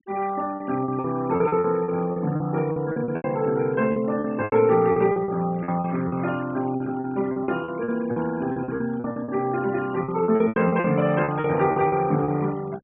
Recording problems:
low-pass filter; nothing above 3.5 kHz
denoising artefacts; signal-to-artefact ratio 20 dB
packet loss; 15% of the sound replaced, filled with repeated pitch periods

